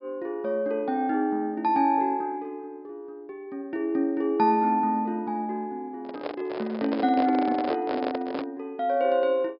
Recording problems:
treble cut off; nothing above 5.5 kHz
handling noise; from 6 to 8.5 s; peak -1 dB vs average level

